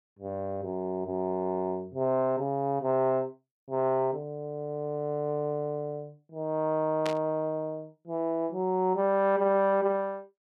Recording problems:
burst of static; at 7 s; peak -3 dB vs average level

